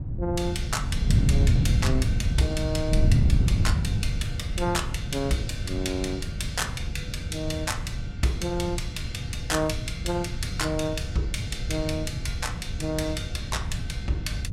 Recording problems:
wind noise; below 130 Hz, SNR -1 dB

